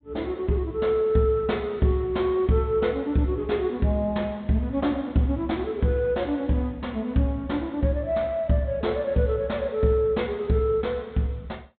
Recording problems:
treble cut off; nothing above 4 kHz

